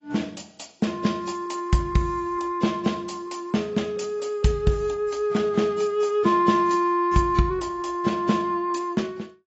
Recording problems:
lossy codec; AAC, log-spectral distance 3 dB, nothing above 7.6 kHz

